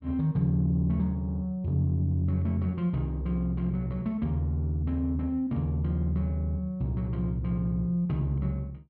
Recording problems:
none

